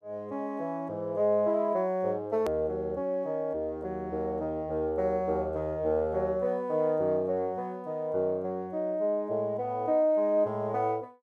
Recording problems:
hard cut with a click; at 2.5 s

